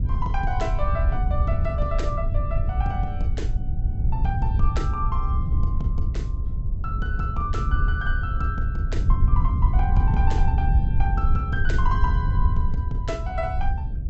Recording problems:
treble missing; nothing above 7.8 kHz
hum; 60 Hz, harmonics up to 720 Hz, SNR 19 dB
rumble; below 82 Hz, SNR -6 dB

